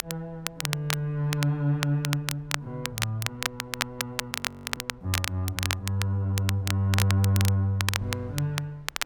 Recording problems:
wind on the microphone; below 130 Hz, SNR 26 dB
crackle; vinyl, SNR 4 dB
audio freezing; at 4.5 s

